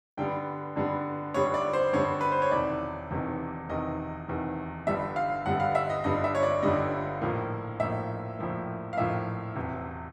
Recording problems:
none

